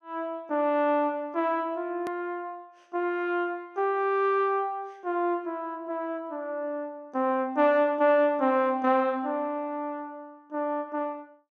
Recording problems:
hard cut with a click; at 2 s

